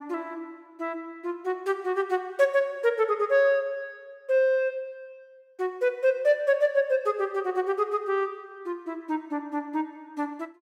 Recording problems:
none

